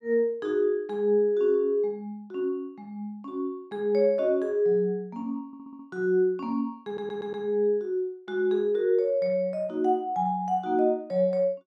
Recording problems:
audio stuttering; at 5.5 s and at 7 s

